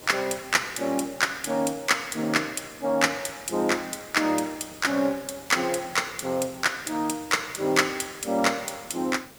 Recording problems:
background hiss; slope -4 dB per octave, SNR 19 dB

